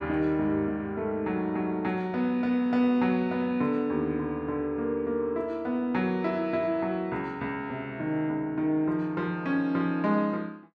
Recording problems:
none

